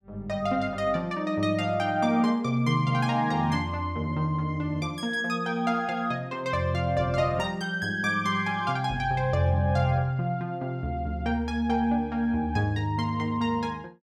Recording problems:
none

